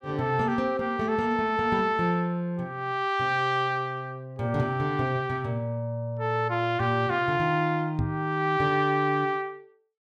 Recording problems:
knock on the microphone; at 8 s; peak +1 dB vs average level

